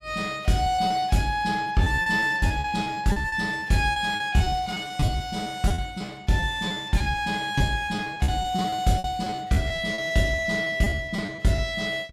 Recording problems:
packet loss; 16% of the sound replaced, filled with repeated pitch periods

